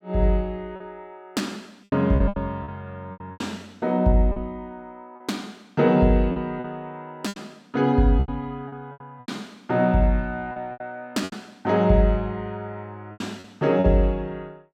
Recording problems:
lost packets; 10% of the sound replaced, filled with repeated pitch periods

